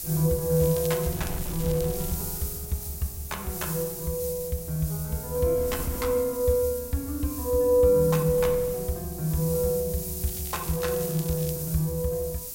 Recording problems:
hiss; SNR 8 dB
wind noise; below 160 Hz, SNR 17 dB
crackle; from 0.5 to 2 s and from 10 to 12 s; loose cable, SNR 17 dB

